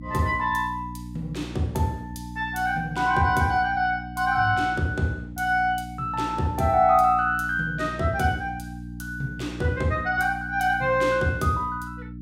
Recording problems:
hum; 60 Hz, harmonics up to 300 Hz, SNR 13 dB

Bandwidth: 16.5 kHz